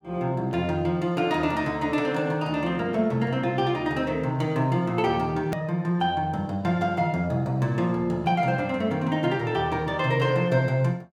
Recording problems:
edit click; at 5.5 s

